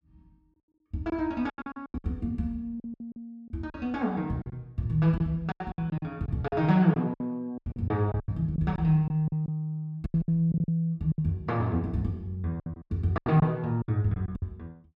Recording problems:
packet loss; 14% of the sound replaced, filled with silence

